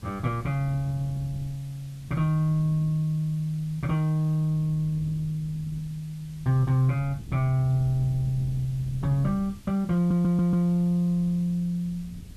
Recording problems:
hiss; slope 0 dB per octave, SNR 28 dB
wind on the microphone; below 160 Hz, SNR 18 dB
stutter; at 10 s

